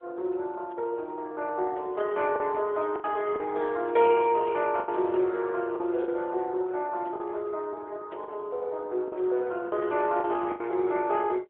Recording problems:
telephone audio; 320 Hz to 3.8 kHz, AMR-NB
packet loss; 5% of the sound replaced, filled with the last packet

